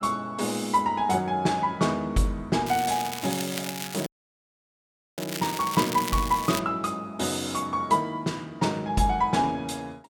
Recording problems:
crackling; from 2.5 to 6.5 s; loose cable, SNR 8 dB
audio cutting out; at 4 s for 1 s

